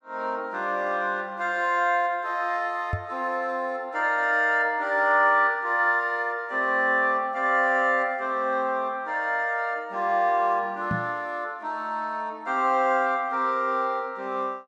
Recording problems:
microphone bump; at 3 s and at 11 s; peak -1 dB vs average level

